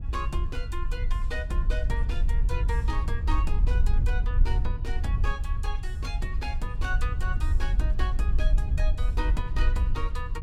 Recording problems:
wind on the microphone; below 62 Hz, SNR -8 dB

